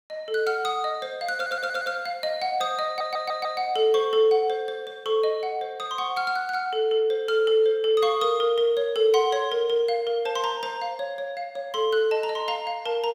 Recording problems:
audio stuttering; at 1.5 s and at 3 s

